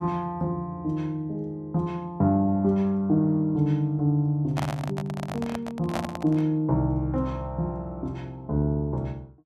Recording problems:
microphone handling noise; from 4.5 to 6.5 s; peak 0 dB vs average level

